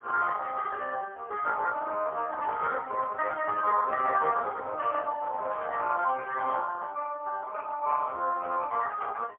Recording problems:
telephone audio; 340 Hz to 3.1 kHz, AMR-NB, then MP3

